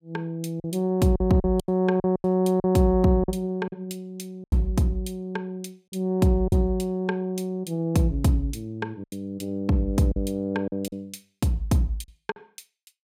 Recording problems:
packet loss; 7% of the sound replaced, filled with silence

